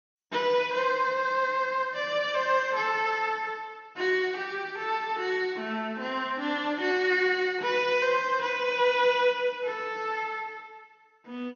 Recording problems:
lossy compression; MP2, log-spectral distance 2 dB, nothing above 5.8 kHz

